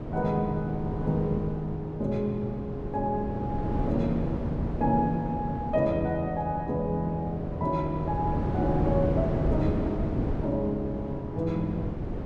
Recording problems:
wind on the microphone; below 350 Hz, SNR 3 dB

